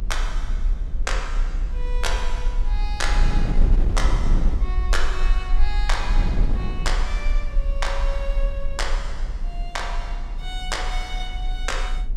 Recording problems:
rumble; below 40 Hz, strongest tone 30 Hz, SNR -4 dB
wind noise; below 190 Hz, SNR 3 dB

